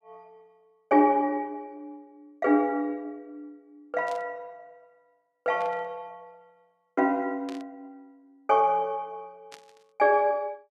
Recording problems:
static burst; 4 times, first at 4 s; peak -14 dB vs average level

